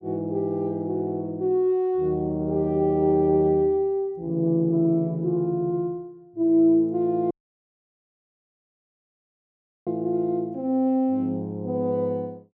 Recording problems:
dropout; at 7.5 s for 2.5 s

